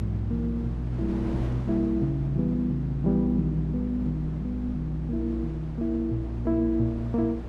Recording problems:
hum; 60 Hz, harmonics up to 360 Hz, SNR 7 dB
wind on the microphone; below 530 Hz, SNR 15 dB

